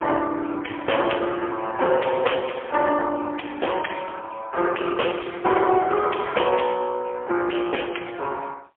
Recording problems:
telephone audio; 280 Hz to 3.2 kHz, AMR-NB, then MP3
distortion; hard clipping, signal-to-distortion ratio 12 dB

